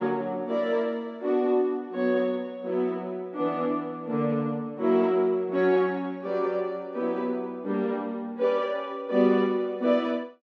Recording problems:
none

